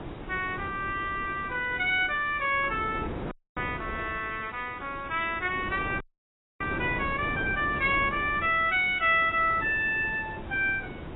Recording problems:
lossy codec; AAC, log-spectral distance 7 dB, nothing above 3.7 kHz
hiss; SNR 28 dB
wind noise; below 590 Hz, SNR 12 dB
audio freezing; at 3.5 s and at 6 s for 0.5 s

